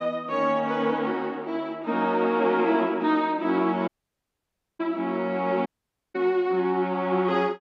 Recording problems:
audio cutting out; at 4 s for 1 s and at 5.5 s

